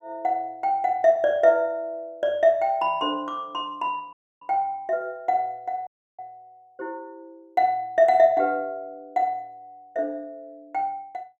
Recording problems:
dropout; at 4 s and at 6 s

